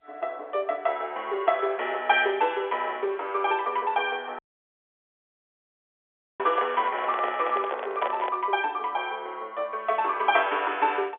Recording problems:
telephone audio; 340 Hz to 3.5 kHz, G.711
dropout; at 4.5 s for 2 s
microphone handling noise; from 6.5 to 8.5 s; peak 0 dB vs average level

